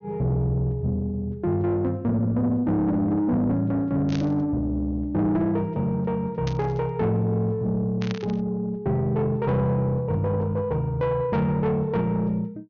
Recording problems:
treble missing; nothing above 6.7 kHz
distorted audio; soft clipping, signal-to-distortion ratio 10 dB
burst of static; at 4 s, at 6.5 s and at 8 s; peak -7 dB vs average level

